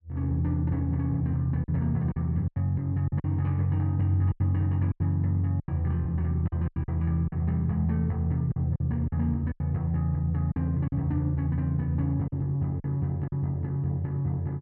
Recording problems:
lost packets; 7% of the sound replaced, filled with silence

